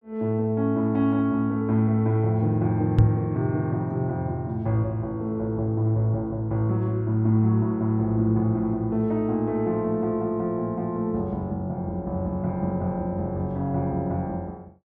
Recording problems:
microphone thump; at 3 s; peak +9 dB vs average level

